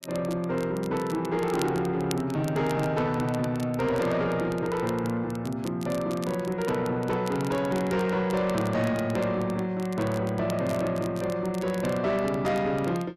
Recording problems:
distortion; soft clipping, signal-to-distortion ratio 12 dB
crackling; vinyl, SNR 19 dB

